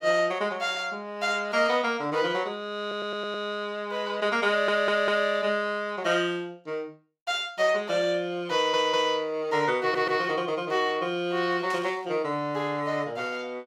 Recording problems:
audio stuttering; 4 times, first at 3 s
burst of static; at 12 s; peak -9 dB vs average level

